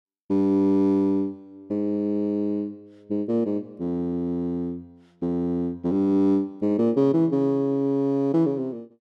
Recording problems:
none

